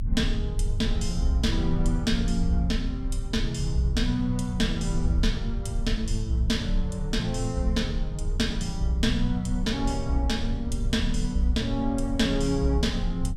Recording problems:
rumble; below 70 Hz, strongest tone 32 Hz, SNR 4 dB

